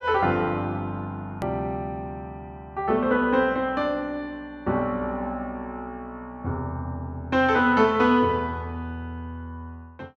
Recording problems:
click at an edit; at 1.5 s

